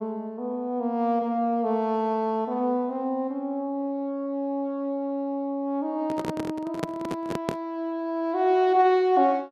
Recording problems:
microphone handling noise; from 6 to 7.5 s; peak +2 dB vs average level

